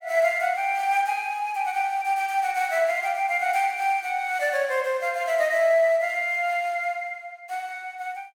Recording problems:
none

